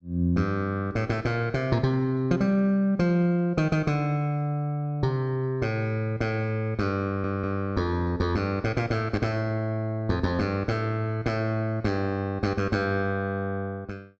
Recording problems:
stutter; at 7 s

